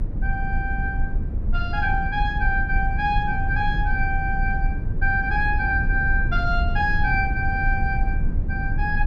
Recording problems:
rumble; below 78 Hz, strongest tone 26 Hz, SNR 1 dB

